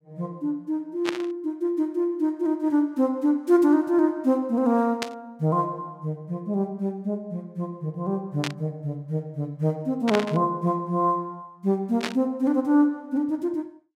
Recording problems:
burst of static; 5 times, first at 1 s; peak +2 dB vs average level

